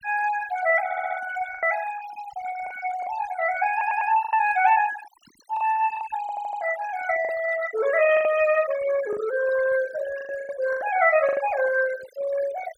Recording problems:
noise reduction artefacts; signal-to-artefact ratio 14 dB
packet loss; 7% of the sound replaced, filled with the last packet
audio stuttering; at 1 s, at 3.5 s and at 6 s

